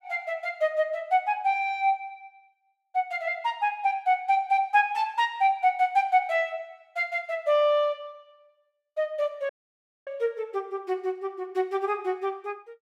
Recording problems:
dropout; at 9.5 s for 0.5 s

